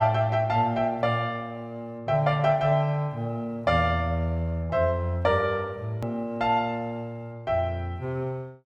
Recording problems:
edit click; at 6 s

